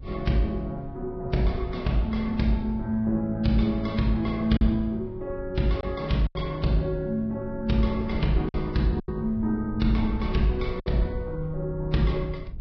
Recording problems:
lossy codec; Vorbis, log-spectral distance 2 dB, nothing above 5.2 kHz
low-frequency rumble; below 86 Hz, SNR 13 dB
lost packets; 3% of the sound replaced, filled with silence

